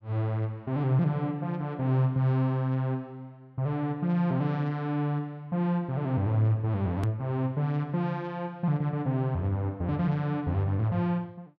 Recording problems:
edit click; at 7 s

